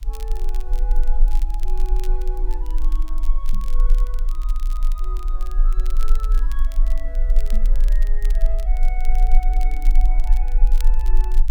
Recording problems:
hiss; slope -2 dB per octave, SNR 25 dB
low-frequency rumble; below 34 Hz, strongest tone 18 Hz, SNR -16 dB
crackle; vinyl, SNR 8 dB
microphone bump; at 3.5 s and at 7.5 s; peak +8 dB vs average level

